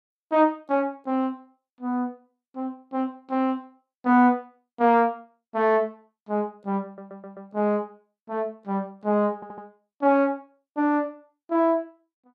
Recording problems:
audio stuttering; at 7 s and at 9.5 s

